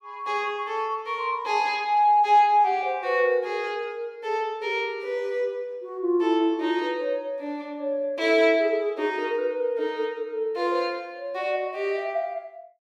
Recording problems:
none

